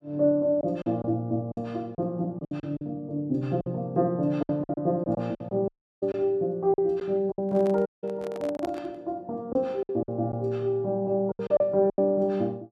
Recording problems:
packet loss; 9% of the sound replaced, filled with silence
dropout; at 5.5 s and at 8 s
microphone handling noise; from 7.5 to 9 s; peak -8 dB vs average level

